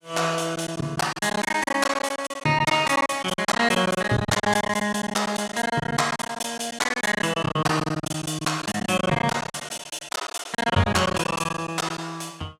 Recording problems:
lost packets; 19% of the sound replaced, filled with silence

